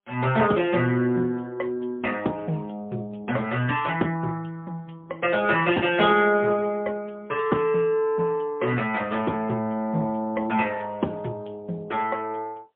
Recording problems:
phone line; 170 Hz to 3.4 kHz, AMR-NB, then MP3

